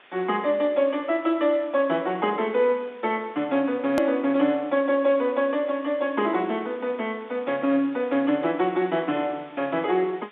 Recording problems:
phone line; 190 Hz to 3.7 kHz, G.711
background hiss; SNR 26 dB
click at an edit; at 4 s

